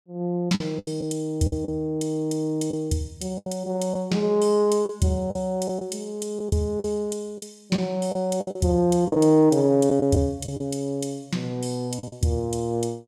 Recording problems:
packet loss; 7% of the sound replaced, filled with the last packet

